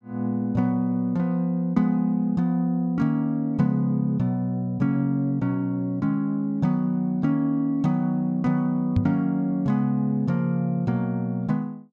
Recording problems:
microphone thump; at 9 s; peak +5 dB vs average level

